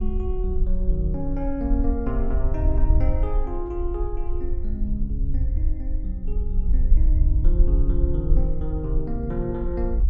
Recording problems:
low-frequency rumble; below 54 Hz, SNR -5 dB

